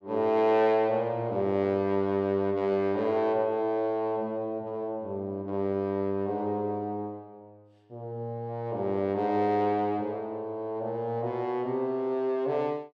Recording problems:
none

